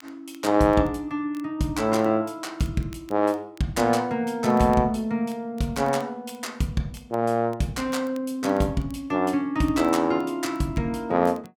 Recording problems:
crackling; vinyl, SNR 30 dB

